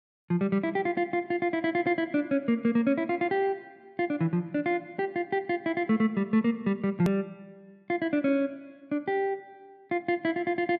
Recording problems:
edit click; at 7 s

